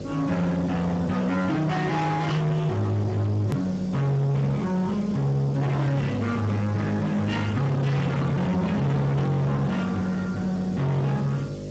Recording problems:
lossy codec; Speex, log-spectral distance 3 dB, nothing above 13.1 kHz
distorted audio; hard clipping, signal-to-distortion ratio 6 dB
hum; 50 Hz, harmonics up to 700 Hz, SNR 12 dB
hiss; slope +3 dB per octave, SNR 27 dB
hard cut with a click; at 3.5 s

